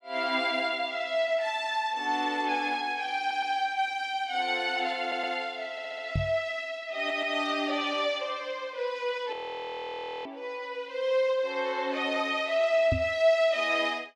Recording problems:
audio stuttering; 4 times, first at 3 s
knock on the microphone; at 6 s and at 13 s; peak +3 dB vs average level
audio freezing; at 9.5 s for 1 s

